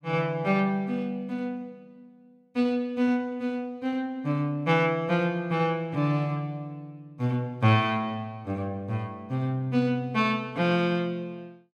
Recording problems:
none

